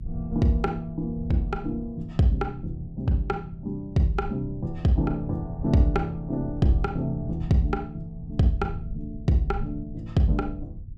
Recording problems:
low-frequency rumble; below 100 Hz, SNR 12 dB

